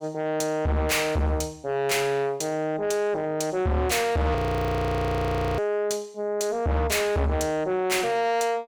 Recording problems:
distorted audio; soft clipping, signal-to-distortion ratio 6 dB
frozen audio; at 4.5 s for 1 s

